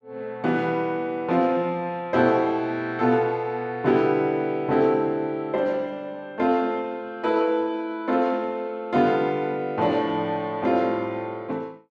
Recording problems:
none

